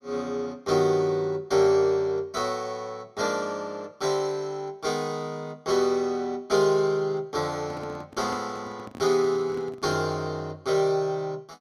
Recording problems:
handling noise; from 7.5 to 10 s; peak -10 dB vs average level

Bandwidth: 15.5 kHz